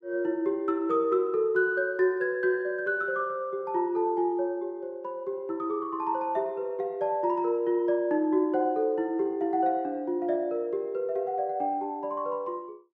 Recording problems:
none

